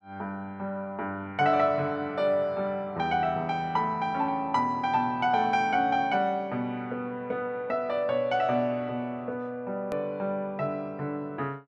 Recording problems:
click at an edit; at 10 s

